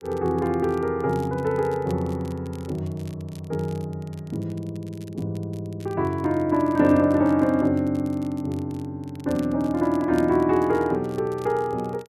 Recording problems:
crackle; vinyl, SNR 27 dB

